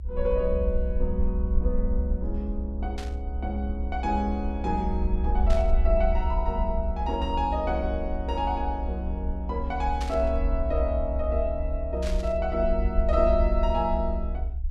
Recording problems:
low-frequency rumble; below 64 Hz, SNR 1 dB
static burst; 4 times, first at 3 s; peak -5 dB vs average level

